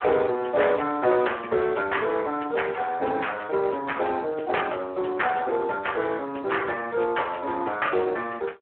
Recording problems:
telephone audio; 280 Hz to 3.3 kHz, Speex

